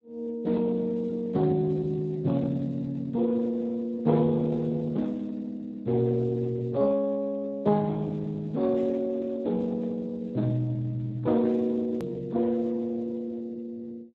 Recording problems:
lossy codec; Speex, log-spectral distance 2 dB, nothing above 13.1 kHz
edit click; at 12 s

